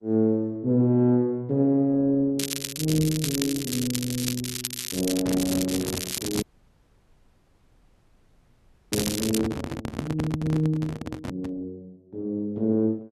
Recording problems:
lossy codec; Opus, log-spectral distance 3 dB
crackling; from 2.5 to 9.5 s; loose cable, SNR 5 dB
microphone handling noise; from 5 to 12 s; peak 0 dB vs average level
audio cutting out; at 6.5 s for 2.5 s

